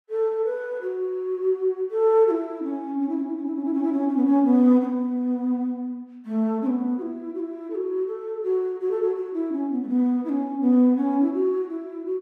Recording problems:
none

